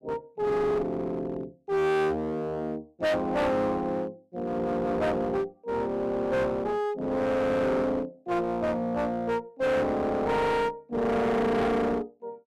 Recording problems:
distorted audio; hard clipping, uneven, signal-to-distortion ratio 5 dB

